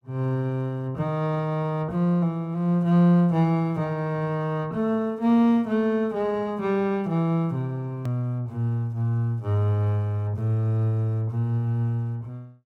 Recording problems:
hard cut with a click; at 8 s

